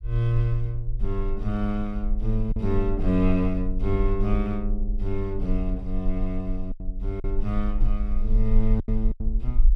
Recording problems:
rumble; below 40 Hz, strongest tone 22 Hz, SNR 2 dB
lost packets; 3% of the sound replaced, filled with silence

